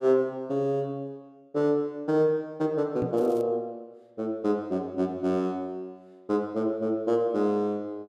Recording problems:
microphone thump; at 3 s; peak 0 dB vs average level
crackle; at 3 s; loose cable, SNR 29 dB

